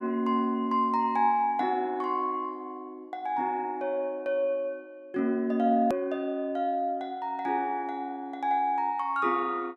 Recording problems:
click at an edit; at 6 s

